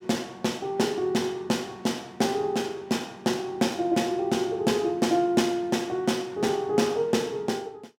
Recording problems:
none

